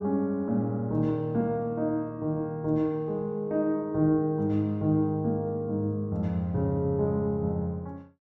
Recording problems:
none

